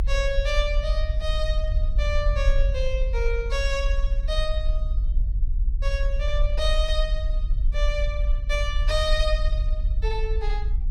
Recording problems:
low-frequency rumble; below 48 Hz, strongest tone 30 Hz, SNR -3 dB

